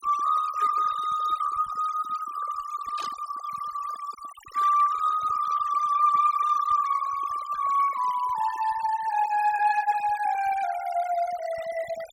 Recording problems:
denoising artefacts; signal-to-artefact ratio 17 dB
static burst; at 3 s; peak -12 dB vs average level

